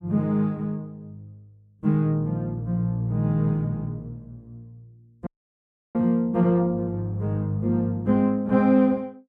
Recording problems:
audio cutting out; at 5.5 s for 0.5 s

